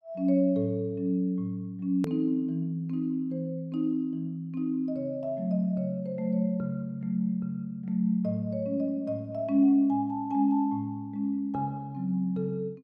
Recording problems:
hard cut with a click; at 2 s

